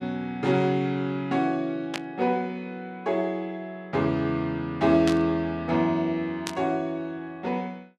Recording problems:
burst of static; at 2 s, at 5 s and at 6.5 s; peak 0 dB vs average level

